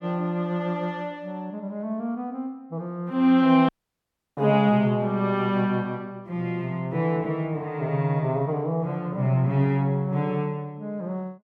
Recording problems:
dropout; at 3.5 s for 0.5 s

